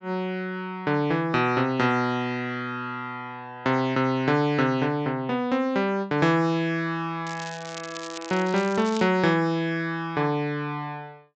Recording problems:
low-pass filter; nothing above 8 kHz
crackle; from 7.5 to 9 s; loose cable, SNR 16 dB

